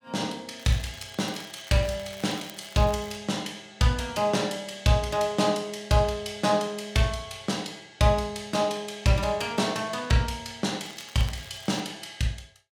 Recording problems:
crackle; from 0.5 to 3 s and at 11 s; loose cable, SNR 20 dB

